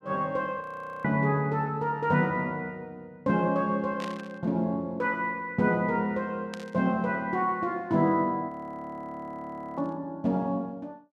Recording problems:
frozen audio; at 0.5 s and at 8.5 s for 1.5 s
burst of static; at 4 s, at 6.5 s and at 10 s; peak -7 dB vs average level

